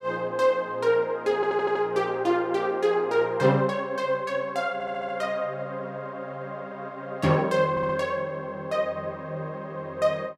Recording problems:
stutter; at 1.5 s, at 4.5 s and at 7.5 s

